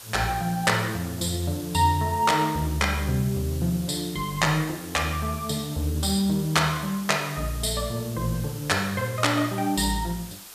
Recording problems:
hiss; SNR 15 dB

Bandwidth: 14.5 kHz